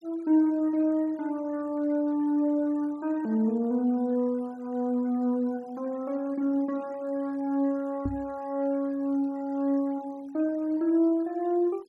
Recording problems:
noise reduction artefacts; signal-to-artefact ratio 28 dB
knock on the microphone; at 8 s; peak 0 dB vs average level

